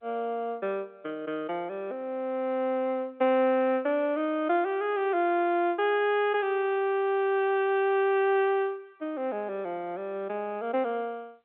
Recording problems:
telephone audio; 220 Hz to 3.6 kHz, G.711

